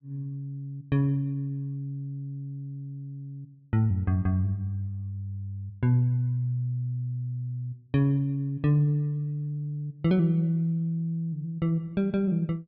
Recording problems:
treble cut off; nothing above 5.5 kHz

